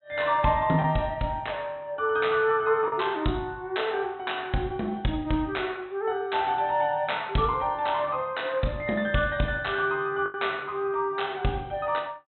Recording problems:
treble missing; nothing above 4 kHz
lost packets; 1.2% of the sound replaced, filled with the last packet

